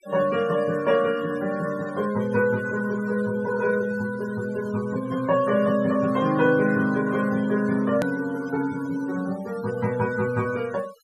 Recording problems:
noise reduction artefacts; signal-to-artefact ratio 19 dB
hard cut with a click; at 8 s

